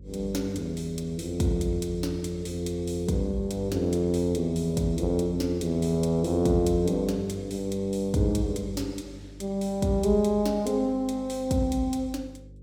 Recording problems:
electrical hum; 50 Hz, harmonics up to 550 Hz, SNR 20 dB

